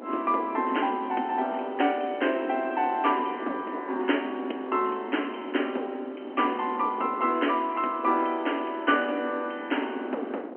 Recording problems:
phone line; 220 Hz to 3.2 kHz, G.711
wind noise; below 540 Hz, SNR 12 dB

